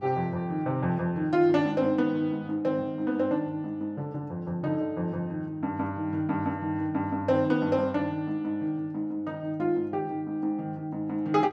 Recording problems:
electrical hum; 50 Hz, harmonics up to 800 Hz, SNR 23 dB

